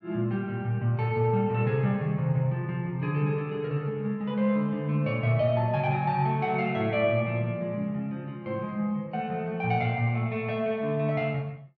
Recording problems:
none

